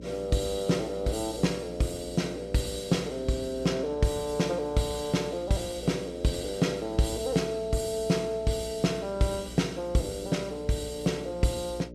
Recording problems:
mains hum; 60 Hz, harmonics up to 600 Hz, SNR 15 dB

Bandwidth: 14.5 kHz